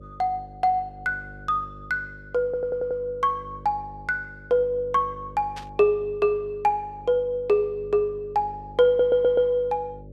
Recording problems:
mains hum; 50 Hz, harmonics up to 600 Hz, SNR 21 dB
audio stuttering; at 2.5 s and at 9 s
static burst; at 5.5 s; peak -11 dB vs average level

